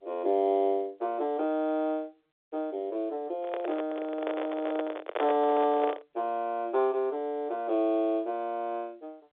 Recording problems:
telephone audio; 320 Hz to 4 kHz, G.711
handling noise; from 3.5 to 6 s; peak +2 dB vs average level

